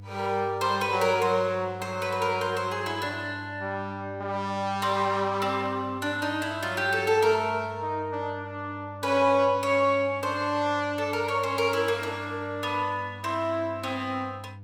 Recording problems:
hum; 50 Hz, harmonics up to 500 Hz, SNR 16 dB

